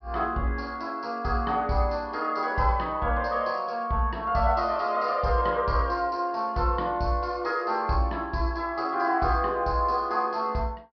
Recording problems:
treble cut off; nothing above 5.5 kHz

